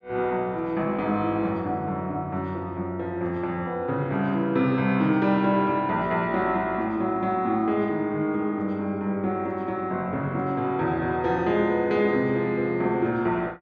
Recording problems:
none

